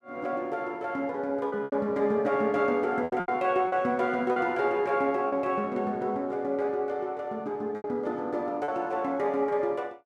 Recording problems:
lost packets; 5% of the sound replaced, filled with repeated pitch periods

